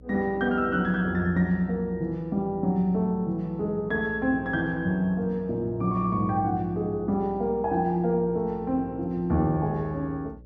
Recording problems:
hum; 60 Hz, harmonics up to 600 Hz, SNR 21 dB

